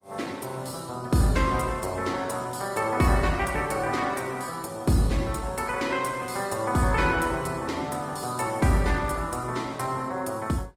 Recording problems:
codec artefacts; Opus, log-spectral distance 5 dB

